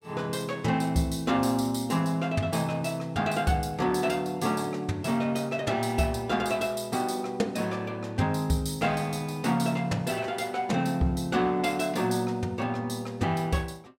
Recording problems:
none

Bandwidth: 16 kHz